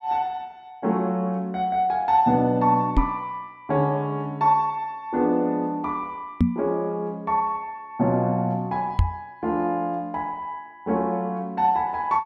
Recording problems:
microphone bump; at 3 s, at 6.5 s and at 9 s; peak +8 dB vs average level

